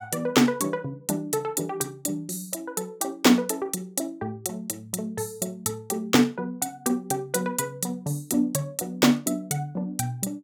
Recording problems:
none

